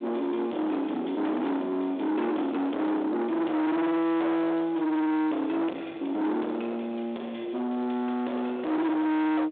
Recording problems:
phone line; 670 Hz to 2.4 kHz, G.726
distorted audio; soft clipping, signal-to-distortion ratio 7 dB

